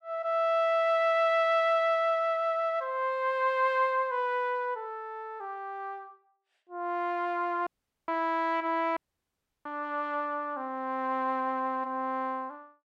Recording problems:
audio cutting out; at 7.5 s and at 9 s for 0.5 s

